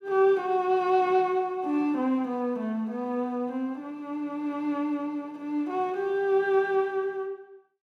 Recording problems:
none

